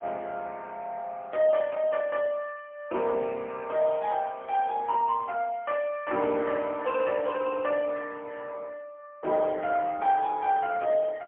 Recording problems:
phone line; 240 Hz to 3.1 kHz, AMR-NB, then MP3

